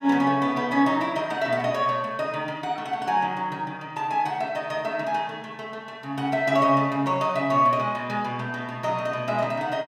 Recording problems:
none

